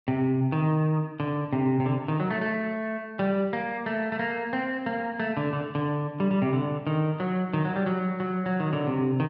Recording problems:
none

